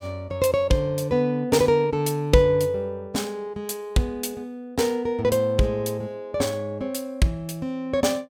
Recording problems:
none

